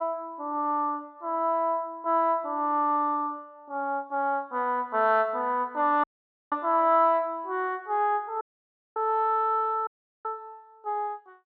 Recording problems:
audio cutting out; at 6 s, at 8.5 s for 0.5 s and at 10 s

